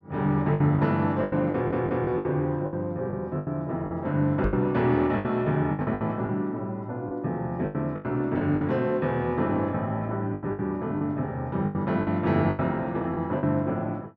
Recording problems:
packet loss; 11% of the sound replaced, filled with the last packet
stutter; at 1.5 s
knock on the microphone; at 4.5 s; peak 0 dB vs average level

